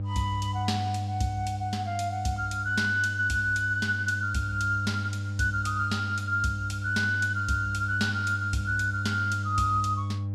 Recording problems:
electrical hum; 50 Hz, harmonics up to 500 Hz, SNR 5 dB

